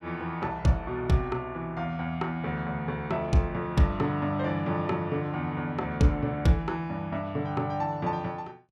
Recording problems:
none

